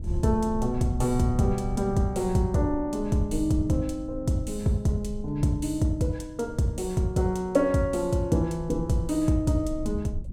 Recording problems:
low-frequency rumble; below 82 Hz, SNR 13 dB

